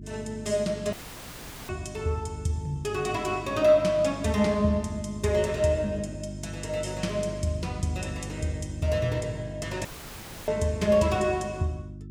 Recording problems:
hum; 50 Hz, harmonics up to 350 Hz, SNR 12 dB
dropout; at 1 s for 1 s and at 10 s for 0.5 s

